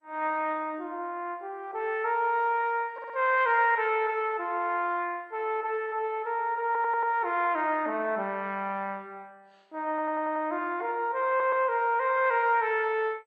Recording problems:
lossy codec; MP2, then AAC, log-spectral distance 3 dB
audio stuttering; 4 times, first at 3 s

